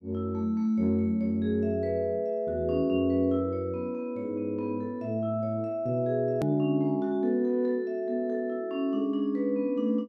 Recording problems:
edit click; at 6.5 s

